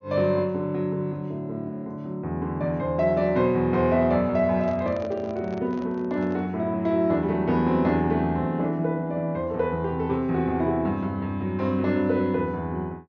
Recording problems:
treble missing; nothing above 6.7 kHz
microphone handling noise; from 4.5 to 6.5 s; peak -11 dB vs average level

